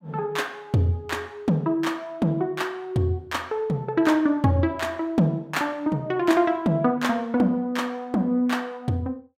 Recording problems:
none

